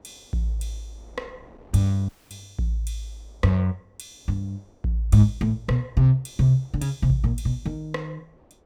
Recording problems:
wind noise; below 650 Hz, SNR 32 dB
audio cutting out; at 2 s

